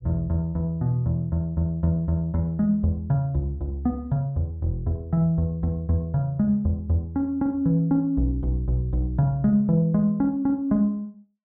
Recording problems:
treble cut off; nothing above 4 kHz

